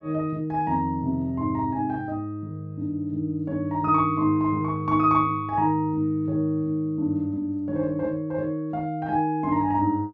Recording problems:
none

